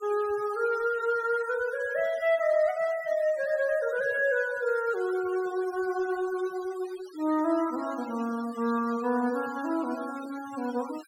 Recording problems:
noise reduction artefacts; signal-to-artefact ratio 19 dB

